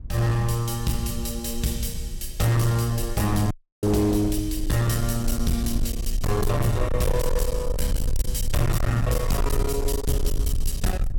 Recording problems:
distortion; hard clipping, uneven, signal-to-distortion ratio 8 dB
low-frequency rumble; below 60 Hz, SNR 5 dB
dropout; at 3.5 s

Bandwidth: 17 kHz